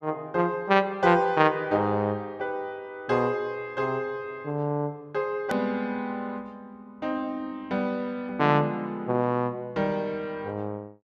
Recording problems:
click at an edit; at 5.5 s

